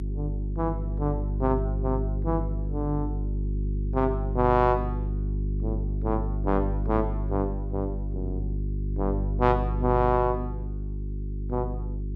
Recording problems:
hum; 50 Hz, harmonics up to 400 Hz, SNR 2 dB

